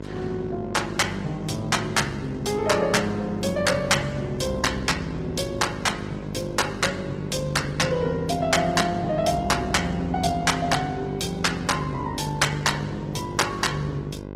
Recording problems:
codec artefacts; Opus, log-spectral distance 4 dB, nothing above 18.3 kHz
hum; 50 Hz, harmonics up to 2 kHz, SNR 11 dB

